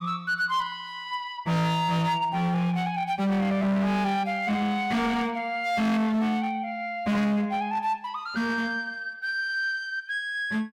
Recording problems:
distortion; hard clipping, signal-to-distortion ratio 7 dB

